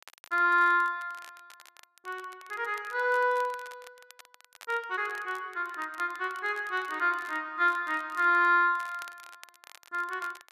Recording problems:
crackling; vinyl, SNR 24 dB

